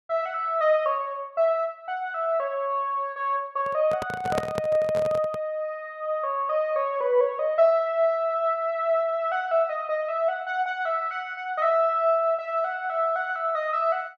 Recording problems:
microphone handling noise; from 3.5 to 5.5 s; peak +2 dB vs average level

